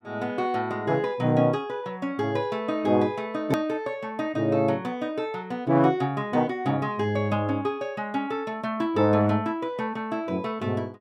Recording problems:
edit click; at 3.5 s

